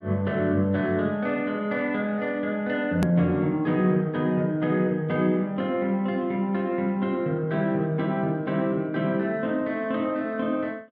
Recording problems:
hard cut with a click; at 3 s

